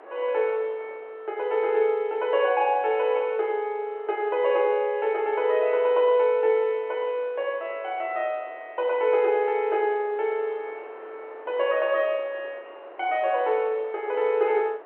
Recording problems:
phone line; 300 Hz to 3.1 kHz, G.711
wind noise; below 1.1 kHz, SNR 23 dB

